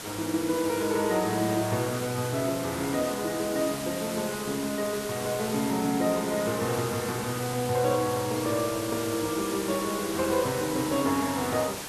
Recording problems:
background hiss; slope -2 dB per octave, SNR 7 dB

